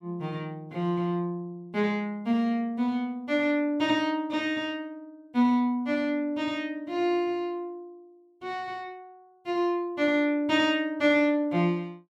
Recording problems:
none

